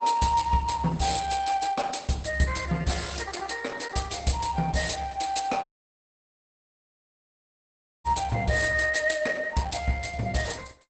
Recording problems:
lossy compression; Opus, log-spectral distance 6 dB, nothing above 8.2 kHz
dropout; at 5.5 s for 2.5 s

